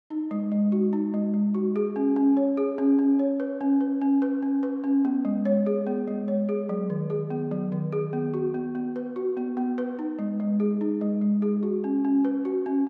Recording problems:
none

